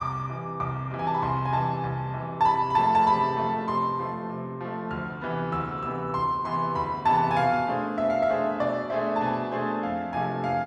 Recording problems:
none

